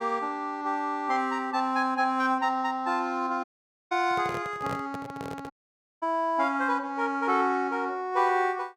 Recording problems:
dropout; at 3.5 s and at 5.5 s for 0.5 s
handling noise; from 4 to 5.5 s; peak -4 dB vs average level

